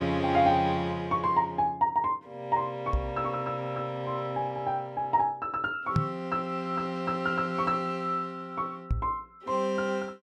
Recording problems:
microphone bump; at 3 s, at 6 s and at 9 s; peak +6 dB vs average level

